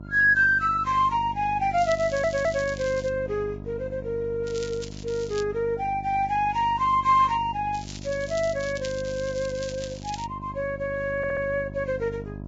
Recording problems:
lossy codec; Vorbis, log-spectral distance 3 dB
hum; 50 Hz, harmonics up to 1 kHz, SNR 13 dB
crackle; from 2 to 3 s, at 4.5 s and from 7.5 to 10 s; loose cable, SNR 16 dB
audio stuttering; at 2 s and at 11 s

